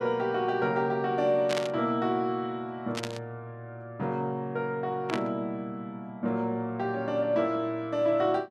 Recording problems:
static burst; at 1.5 s, at 3 s and at 5 s; peak 0 dB vs average level

